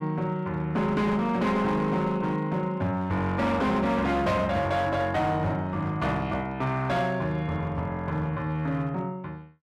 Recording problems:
distortion; hard clipping, uneven, signal-to-distortion ratio 10 dB

